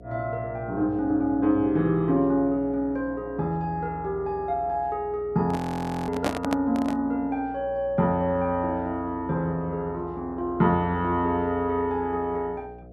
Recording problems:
hum; 60 Hz, harmonics up to 720 Hz, SNR 19 dB
handling noise; from 5.5 to 7 s; peak +4 dB vs average level
audio freezing; at 5.5 s for 0.5 s

